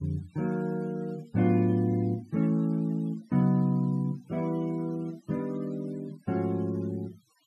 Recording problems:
noise reduction artefacts; signal-to-artefact ratio 27 dB

